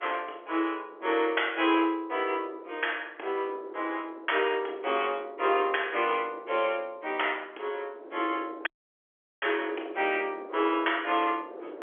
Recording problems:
telephone audio; 280 Hz to 3.4 kHz, G.711
wind noise; below 580 Hz, SNR 18 dB
audio cutting out; at 8.5 s for 1 s

